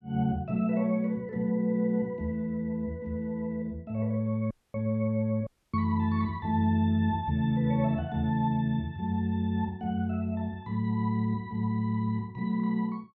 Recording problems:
dropout; at 4.5 s and at 5.5 s

